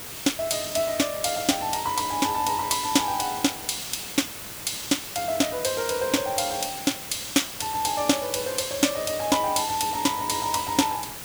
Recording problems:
hiss; slope -2 dB per octave, SNR 9 dB

